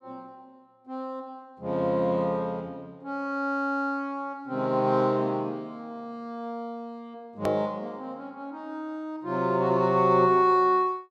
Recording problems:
click at an edit; at 7.5 s

